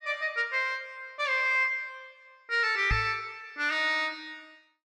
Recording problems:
microphone thump; at 3 s; peak +1 dB vs average level

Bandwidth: 12.5 kHz